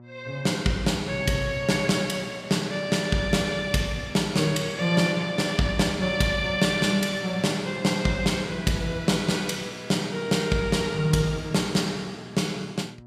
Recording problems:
electrical hum; 60 Hz, harmonics up to 960 Hz, SNR 22 dB

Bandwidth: 15 kHz